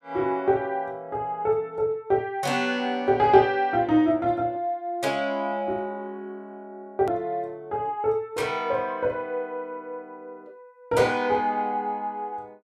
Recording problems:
click at an edit; at 7 s

